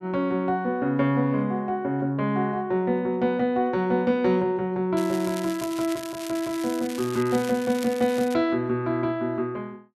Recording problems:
crackling; from 5 to 8.5 s; loose cable, SNR 15 dB

